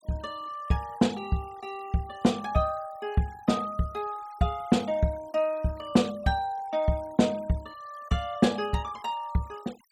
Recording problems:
noise reduction artefacts; signal-to-artefact ratio 23 dB

